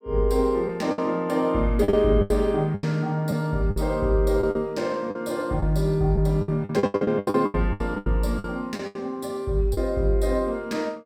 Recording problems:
lost packets; 12% of the sound replaced, filled with the last packet

